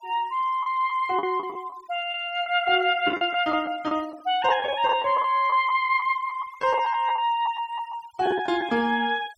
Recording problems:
noise reduction artefacts; signal-to-artefact ratio 26 dB
lost packets; 8% of the sound replaced, filled with the last packet

